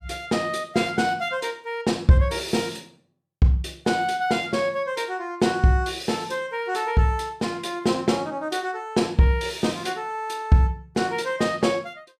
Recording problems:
none

